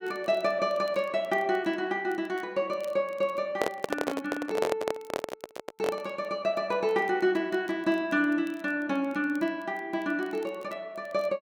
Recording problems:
crackle; vinyl, SNR 29 dB
handling noise; from 3.5 to 6 s; peak +4 dB vs average level

